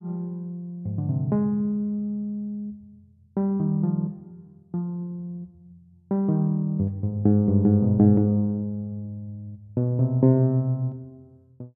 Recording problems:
none

